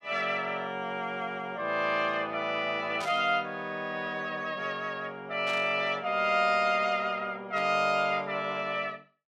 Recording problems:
burst of static; at 3 s, at 5.5 s and at 7.5 s; peak -7 dB vs average level

